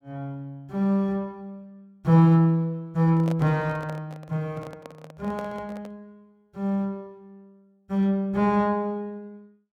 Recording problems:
handling noise; from 3 to 6 s; peak -8 dB vs average level

